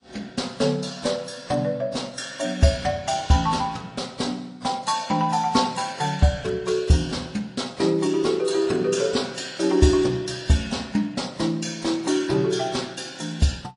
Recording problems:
codec artefacts; MP3, then AAC, log-spectral distance 4 dB, nothing above 10.4 kHz

